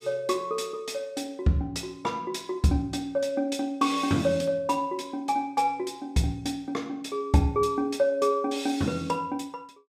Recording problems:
none

